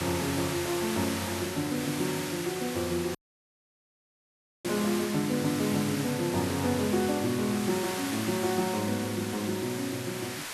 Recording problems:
background hiss; slope 0 dB per octave, SNR 6 dB
dropout; at 3 s for 1.5 s

